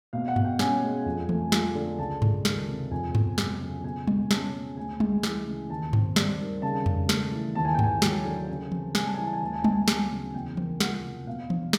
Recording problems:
none

